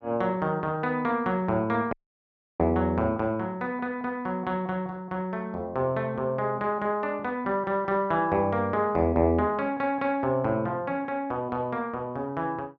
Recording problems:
dropout; at 2 s for 0.5 s

